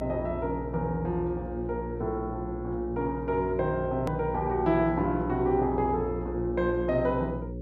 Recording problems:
hum; 60 Hz, harmonics up to 540 Hz, SNR 8 dB
hard cut with a click; at 4 s

